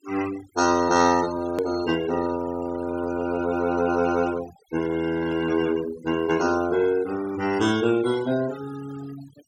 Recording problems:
denoising artefacts; signal-to-artefact ratio 16 dB
hard cut with a click; at 1.5 s

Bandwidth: 16.5 kHz